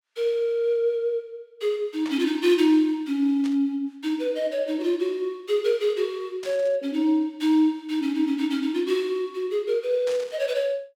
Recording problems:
static burst; 4 times, first at 2 s; peak -10 dB vs average level

